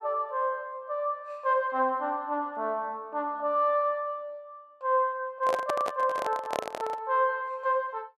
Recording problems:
handling noise; from 5.5 to 7 s; peak +2 dB vs average level

